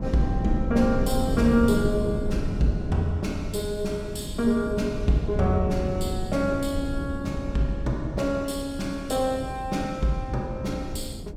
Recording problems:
wind on the microphone; below 210 Hz, SNR 5 dB

